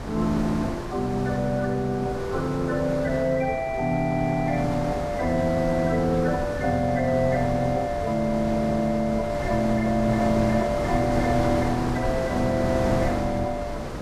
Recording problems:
wind noise; below 780 Hz, SNR 6 dB

